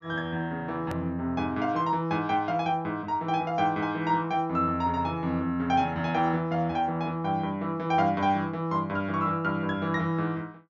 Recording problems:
treble missing; nothing above 6.9 kHz
edit click; at 1 s

